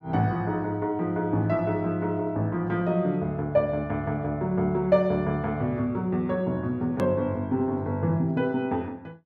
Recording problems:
click at an edit; at 7 s

